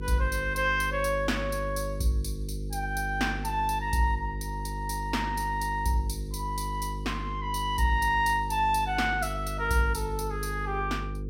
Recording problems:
electrical hum; 50 Hz, harmonics up to 500 Hz, SNR 7 dB

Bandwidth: 16 kHz